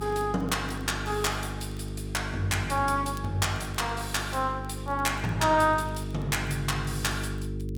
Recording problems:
hum; 50 Hz, harmonics up to 450 Hz, SNR 7 dB
crackle; vinyl, SNR 29 dB

